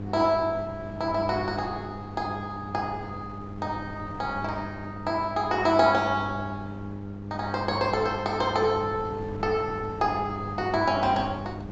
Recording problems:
low-pass filter; nothing above 8 kHz
electrical hum; 50 Hz, harmonics up to 800 Hz, SNR 10 dB
wind on the microphone; below 500 Hz, SNR 16 dB

